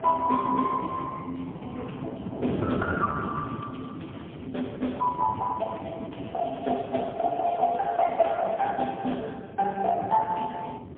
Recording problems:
phone line; 220 Hz to 3.4 kHz, AMR-NB, then MP3
wind noise; below 370 Hz, SNR 9 dB
crackle; at 3.5 s and from 6.5 to 9.5 s; loose cable, SNR 28 dB

